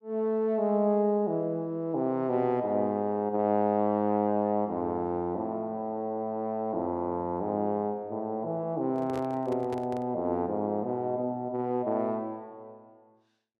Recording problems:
handling noise; from 9 to 10 s; peak -6 dB vs average level

